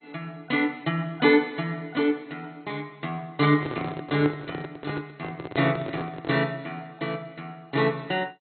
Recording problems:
codec artefacts; MP2, log-spectral distance 3 dB, nothing above 4.1 kHz
microphone handling noise; from 3.5 to 6.5 s; peak -1 dB vs average level

